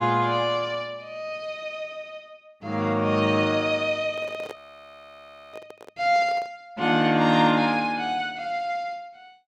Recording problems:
handling noise; from 4 to 6.5 s; peak -9 dB vs average level
audio freezing; at 4.5 s for 1 s

